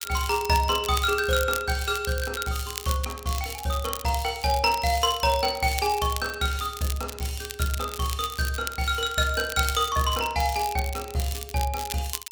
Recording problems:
crackling; vinyl, SNR 10 dB

